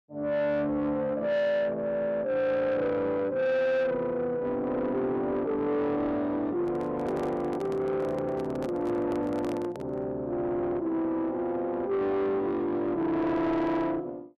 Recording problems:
distorted audio; soft clipping, signal-to-distortion ratio 10 dB
microphone handling noise; from 6.5 to 10 s; peak -5 dB vs average level

